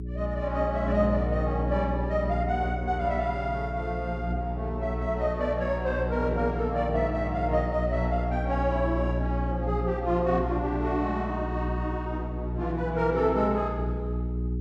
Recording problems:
hum; 60 Hz, harmonics up to 420 Hz, SNR 3 dB

